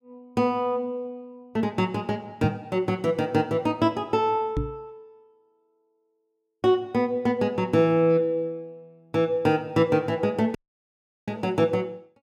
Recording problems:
knock on the microphone; at 2.5 s and at 4.5 s; peak +2 dB vs average level
dropout; at 11 s for 0.5 s

